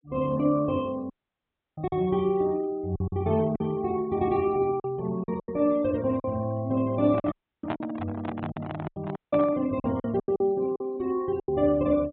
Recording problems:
treble cut off; nothing above 4 kHz
noise reduction artefacts; signal-to-artefact ratio 25 dB
lost packets; 8% of the sound replaced, filled with silence
dropout; at 1 s for 0.5 s, at 7.5 s and at 9 s
handling noise; from 7 to 9.5 s; peak 0 dB vs average level

